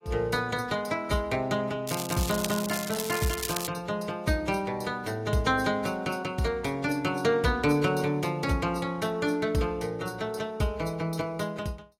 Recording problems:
codec artefacts; AAC, log-spectral distance 4 dB, nothing above 14.3 kHz
crackling; from 2 to 3.5 s; loose cable, SNR 5 dB

